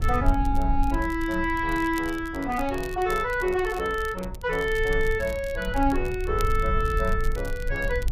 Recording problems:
low-frequency rumble; below 58 Hz, SNR 7 dB
crackle; vinyl, SNR 20 dB

